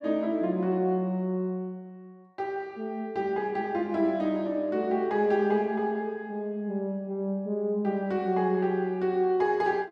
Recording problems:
none

